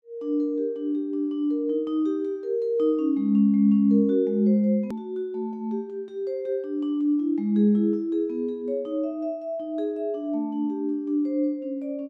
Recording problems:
edit click; at 5 s

